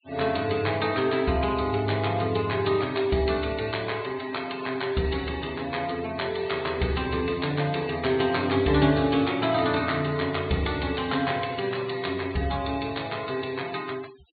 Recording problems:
low-pass filter; nothing above 4.4 kHz
denoising artefacts; signal-to-artefact ratio 18 dB

